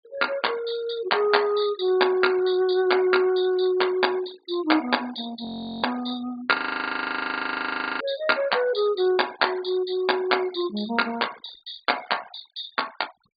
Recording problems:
treble cut off; nothing above 4.7 kHz
denoising artefacts; signal-to-artefact ratio 19 dB
audio freezing; at 5.5 s and at 6.5 s for 1.5 s

